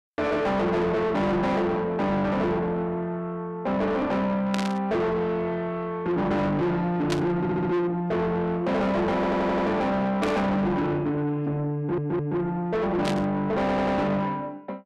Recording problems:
distortion; soft clipping, signal-to-distortion ratio 6 dB
static burst; 4 times, first at 4.5 s; peak -1 dB vs average level
audio stuttering; 4 times, first at 7.5 s

